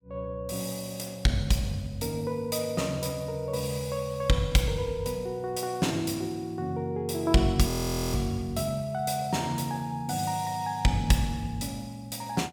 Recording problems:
frozen audio; at 7.5 s

